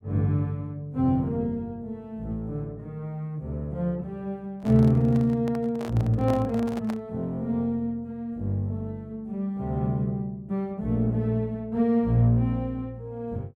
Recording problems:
handling noise; from 4.5 to 7 s; peak -5 dB vs average level

